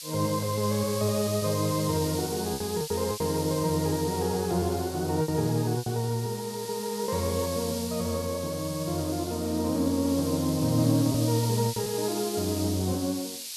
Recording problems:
hiss; SNR 9 dB
lost packets; 4% of the sound replaced, filled with repeated pitch periods

